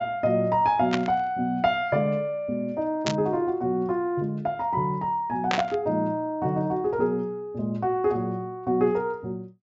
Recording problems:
treble cut off; nothing above 7.6 kHz
static burst; at 1 s, at 3 s and at 5.5 s; peak +3 dB vs average level

